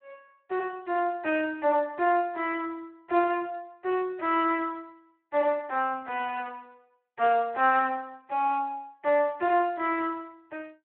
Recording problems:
phone line; 340 Hz to 3.1 kHz, Speex

